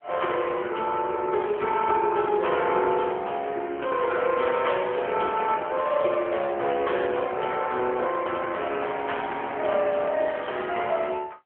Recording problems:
telephone audio; 280 Hz to 3.3 kHz, AMR-NB

